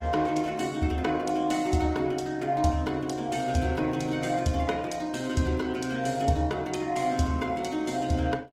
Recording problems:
codec artefacts; Opus, log-spectral distance 3 dB

